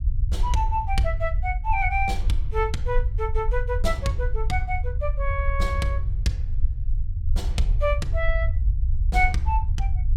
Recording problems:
low-frequency rumble; below 68 Hz, SNR -1 dB

